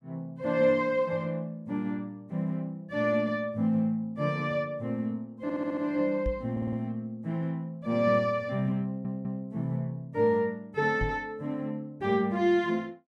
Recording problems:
stutter; at 5.5 s, at 6.5 s and at 9 s
knock on the microphone; at 6.5 s and at 11 s; peak 0 dB vs average level

